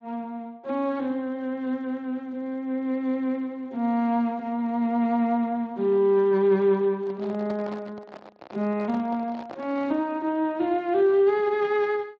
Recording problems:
lossy codec; Speex, log-spectral distance 2 dB
handling noise; from 7 to 10 s; peak -8 dB vs average level

